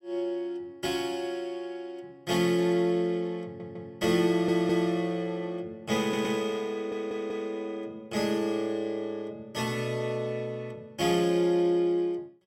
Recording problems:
stutter; 4 times, first at 3.5 s

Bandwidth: 16.5 kHz